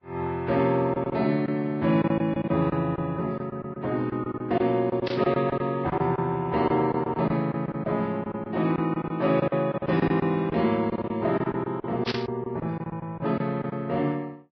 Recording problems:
lossy codec; Vorbis, log-spectral distance 2 dB
lost packets; 11% of the sound replaced, filled with silence
static burst; at 5 s and at 12 s; peak +1 dB vs average level

